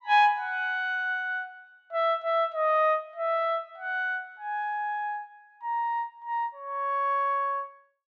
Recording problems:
none

